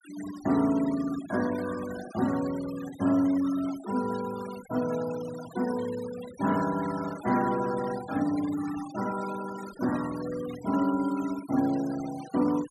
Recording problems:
denoising artefacts; signal-to-artefact ratio 15 dB

